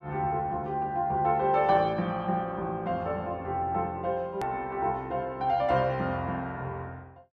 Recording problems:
edit click; at 4.5 s

